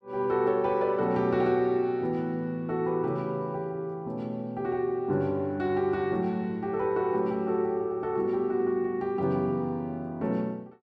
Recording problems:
none

